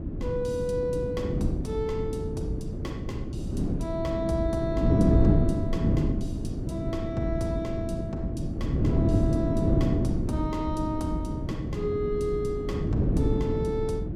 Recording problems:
wind on the microphone; below 280 Hz, SNR -3 dB

